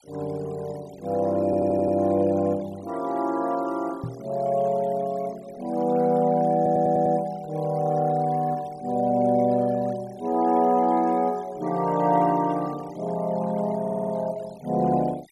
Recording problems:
denoising artefacts; signal-to-artefact ratio 23 dB
stutter; at 1.5 s, at 6.5 s and at 14 s
microphone thump; at 4 s; peak -5 dB vs average level

